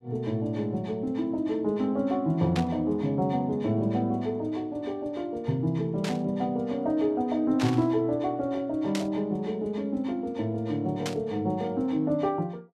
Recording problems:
burst of static; 5 times, first at 2.5 s; peak -2 dB vs average level

